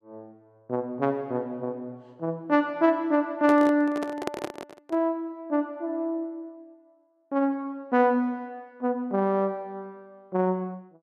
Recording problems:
microphone handling noise; from 3.5 to 5 s; peak +1 dB vs average level

